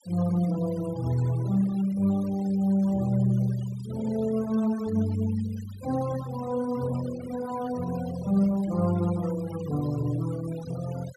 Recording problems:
noise reduction artefacts; signal-to-artefact ratio 19 dB

